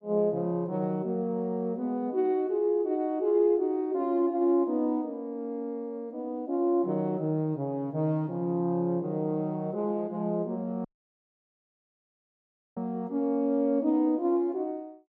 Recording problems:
dropout; at 11 s for 2 s

